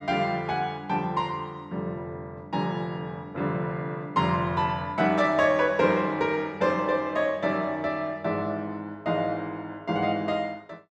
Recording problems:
none

